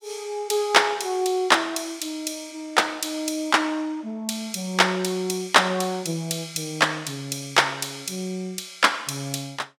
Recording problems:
none

